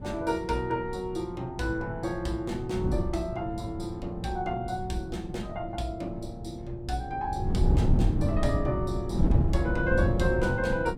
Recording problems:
wind noise; below 170 Hz, SNR -1 dB

